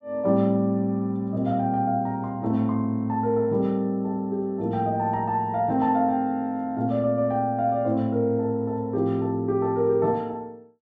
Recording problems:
none

